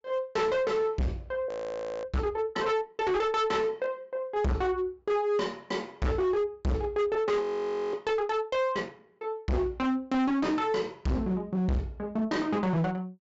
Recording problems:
low-pass filter; nothing above 8 kHz
distorted audio; hard clipping, signal-to-distortion ratio 6 dB
audio freezing; at 1.5 s for 0.5 s and at 7.5 s for 0.5 s

